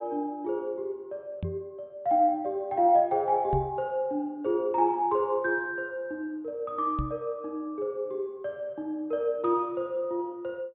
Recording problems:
treble cut off; nothing above 4 kHz
microphone thump; at 1.5 s, at 3.5 s and at 7 s; peak +1 dB vs average level

